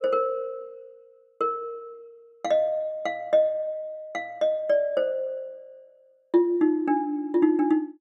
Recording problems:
none

